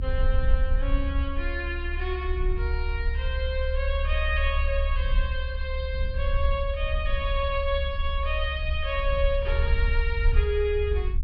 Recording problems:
treble missing; nothing above 5.5 kHz
low-frequency rumble; below 68 Hz, SNR -2 dB

